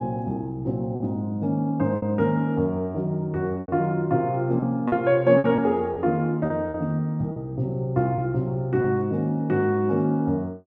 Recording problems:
lost packets; 5% of the sound replaced, filled with repeated pitch periods

